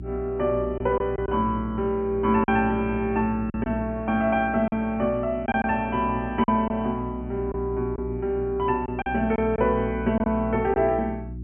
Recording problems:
low-pass filter; nothing above 3.1 kHz
electrical hum; 60 Hz, harmonics up to 360 Hz, SNR 11 dB
packet loss; 5% of the sound replaced, filled with silence

